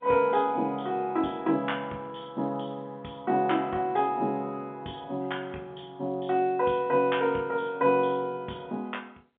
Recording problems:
phone line; 170 Hz to 3.5 kHz, G.711

